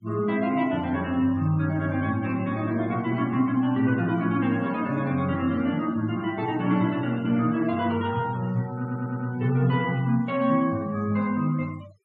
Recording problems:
denoising artefacts; signal-to-artefact ratio 23 dB
stutter; at 9 s

